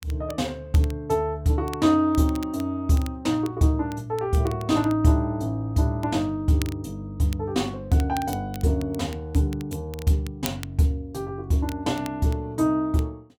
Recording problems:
crackle; vinyl, SNR 20 dB

